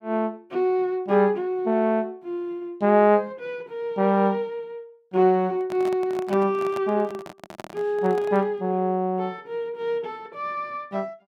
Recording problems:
handling noise; from 5.5 to 8.5 s; peak -8 dB vs average level

